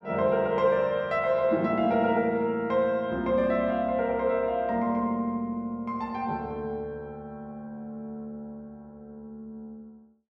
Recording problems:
none

